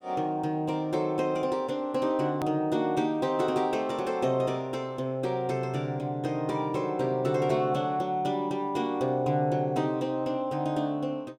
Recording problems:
hard cut with a click; at 2.5 s

